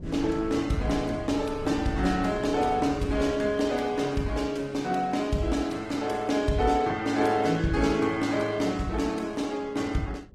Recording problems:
codec artefacts; Opus, log-spectral distance 3 dB, nothing above 18.3 kHz
wind on the microphone; below 220 Hz, SNR 15 dB

